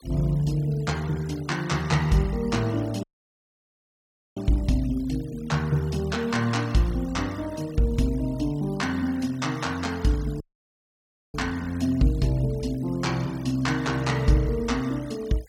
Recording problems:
denoising artefacts; signal-to-artefact ratio 21 dB
dropout; at 3 s for 1.5 s and at 10 s for 1 s

